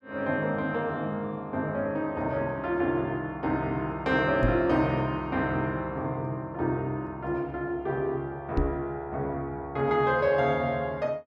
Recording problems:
microphone bump; at 4.5 s and at 8.5 s; peak +5 dB vs average level

